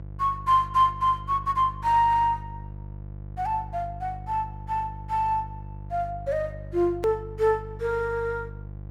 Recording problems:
hum; 50 Hz, harmonics up to 650 Hz, SNR 14 dB
edit click; at 7 s

